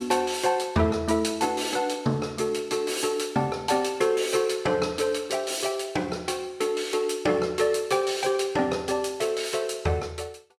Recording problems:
none

